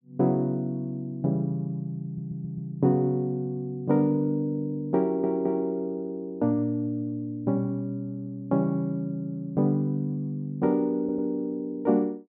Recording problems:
stutter; at 2 s, at 5 s and at 11 s

